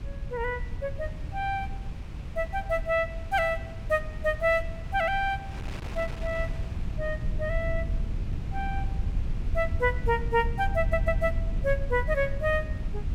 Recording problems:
low-frequency rumble; below 90 Hz, SNR 5 dB
wind noise; below 1.5 kHz, SNR 17 dB
stutter; at 11 s

